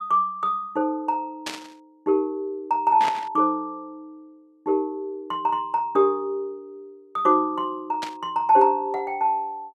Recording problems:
static burst; at 1.5 s, at 3 s and at 8 s; peak -3 dB vs average level

